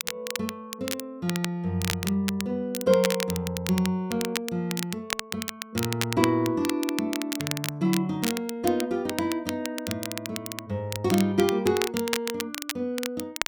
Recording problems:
crackle; vinyl, SNR 6 dB

